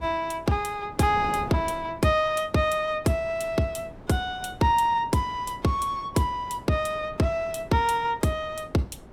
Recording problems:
wind noise; below 530 Hz, SNR 17 dB

